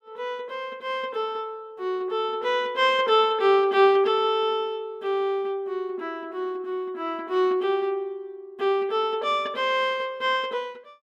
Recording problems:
none

